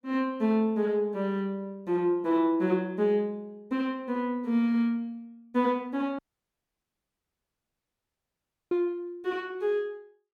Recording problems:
dropout; at 6 s for 2.5 s

